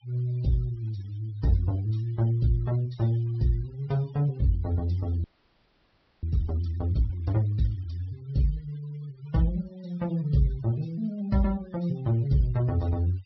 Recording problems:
low-pass filter; nothing above 5.5 kHz
noise reduction artefacts; signal-to-artefact ratio 23 dB
frozen audio; at 5 s for 1 s

